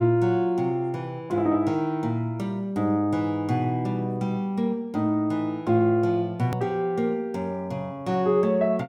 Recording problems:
hard cut with a click; at 6.5 s

